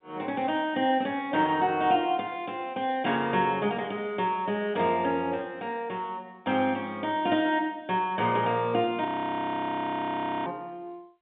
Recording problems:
telephone audio; 190 Hz to 3.6 kHz, G.711
frozen audio; at 9 s for 1.5 s

